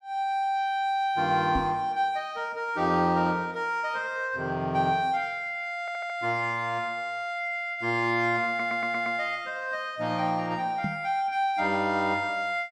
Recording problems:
microphone bump; at 1.5 s and at 11 s; peak 0 dB vs average level
audio stuttering; at 6 s and at 8.5 s

